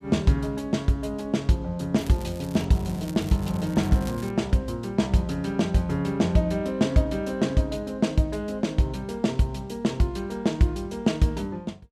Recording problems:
crackle; at 2 s and from 3 to 4.5 s; loose cable, SNR 21 dB

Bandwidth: 14.5 kHz